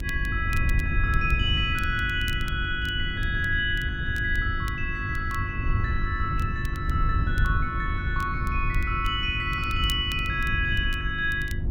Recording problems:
hum; 50 Hz, harmonics up to 350 Hz, SNR 11 dB
wind on the microphone; below 100 Hz, SNR 3 dB
crackle; vinyl, SNR 21 dB

